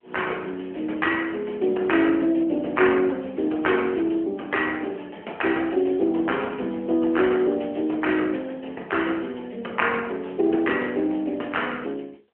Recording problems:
telephone audio; 280 Hz to 3.1 kHz, AMR-NB

